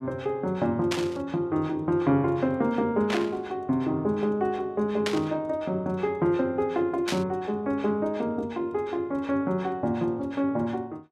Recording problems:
burst of static; 4 times, first at 1 s; peak +1 dB vs average level

